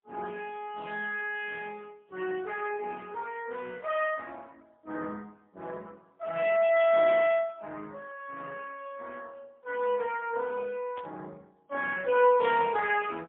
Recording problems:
phone line; 170 Hz to 3.7 kHz, AMR-NB, then MP3
static burst; at 11 s; peak -14 dB vs average level

